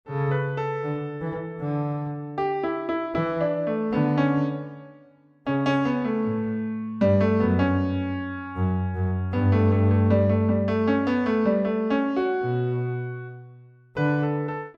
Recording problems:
none

